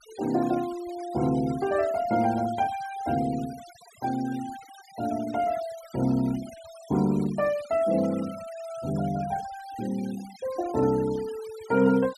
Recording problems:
denoising artefacts; signal-to-artefact ratio 19 dB

